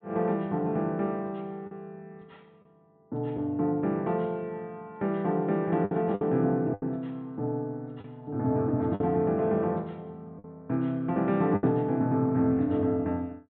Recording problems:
treble cut off; nothing above 4 kHz
lost packets; 4% of the sound replaced, filled with the last packet

